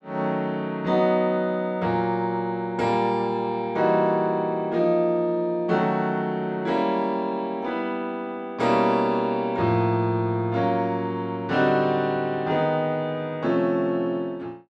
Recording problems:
none

